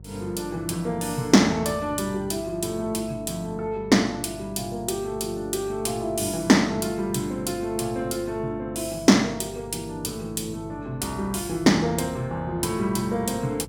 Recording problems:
mains hum; 50 Hz, harmonics up to 550 Hz, SNR 18 dB

